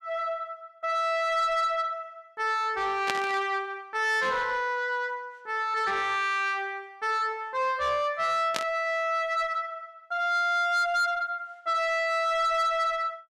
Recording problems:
distorted audio; soft clipping, signal-to-distortion ratio 11 dB
burst of static; at 3 s and at 8.5 s; peak +2 dB vs average level

